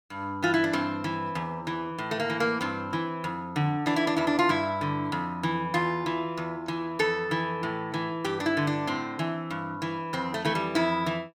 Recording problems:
none

